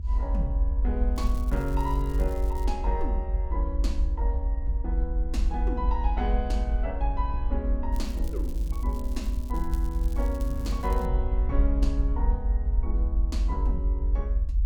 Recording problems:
rumble; below 52 Hz, strongest tone 48 Hz, SNR -6 dB
wind on the microphone; below 140 Hz, SNR 13 dB
crackling; from 1 to 2.5 s and from 8 to 11 s; loose cable, SNR 17 dB

